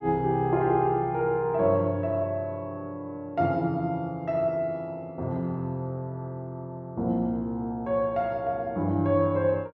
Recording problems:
none

